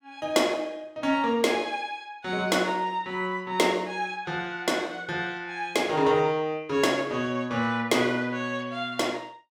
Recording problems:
none

